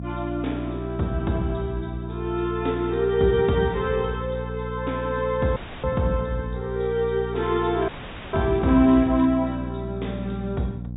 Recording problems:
low-pass filter; nothing above 4 kHz
electrical hum; 60 Hz, harmonics up to 540 Hz, SNR 9 dB
audio cutting out; at 5.5 s and at 8 s
crackle; from 7.5 to 9.5 s; loose cable, SNR 25 dB

